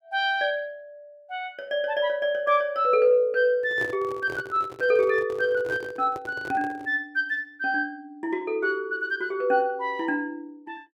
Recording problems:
microphone handling noise; from 3.5 to 7 s; peak -5 dB vs average level

